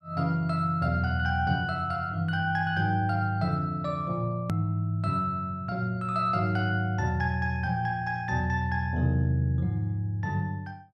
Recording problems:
edit click; at 4.5 s

